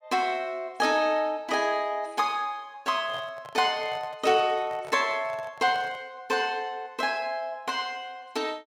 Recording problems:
handling noise; from 3 to 6 s; peak -8 dB vs average level

